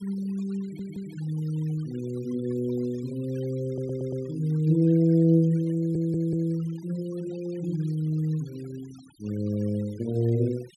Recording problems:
noise reduction artefacts; signal-to-artefact ratio 25 dB
stutter; at 0.5 s, at 3.5 s and at 6 s

